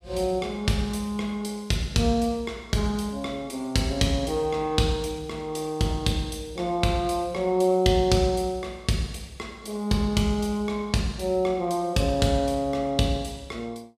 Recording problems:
none

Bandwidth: 15 kHz